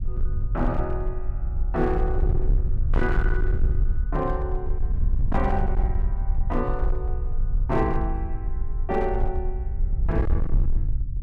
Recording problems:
distorted audio; hard clipping, signal-to-distortion ratio 10 dB
low-frequency rumble; below 60 Hz, SNR -2 dB

